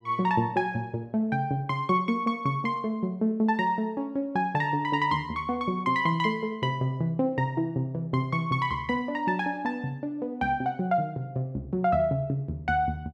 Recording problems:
none

